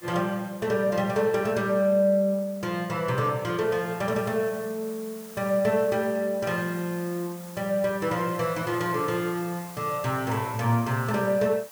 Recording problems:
background hiss; SNR 18 dB

